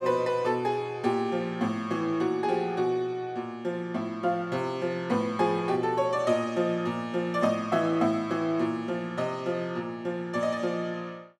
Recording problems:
none

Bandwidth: 13.5 kHz